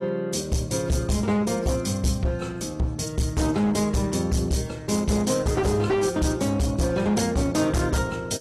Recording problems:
lossy codec; AAC, log-spectral distance 4 dB, nothing above 12 kHz
distorted audio; hard clipping, signal-to-distortion ratio 8 dB

